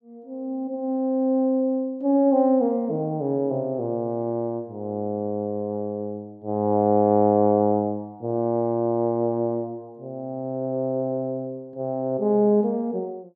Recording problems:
none

